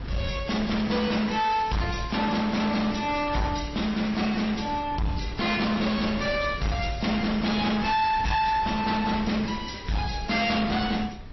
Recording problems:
low-pass filter; nothing above 5.7 kHz
lossy codec; MP3, then AAC, log-spectral distance 5 dB
distortion; hard clipping, signal-to-distortion ratio 7 dB
wind on the microphone; below 380 Hz, SNR 13 dB

